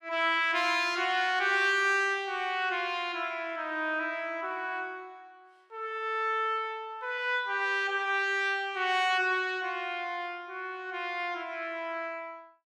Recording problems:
none

